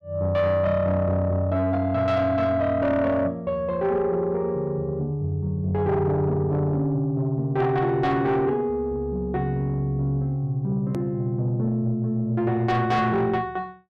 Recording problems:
distortion; soft clipping, signal-to-distortion ratio 12 dB
hard cut with a click; at 11 s

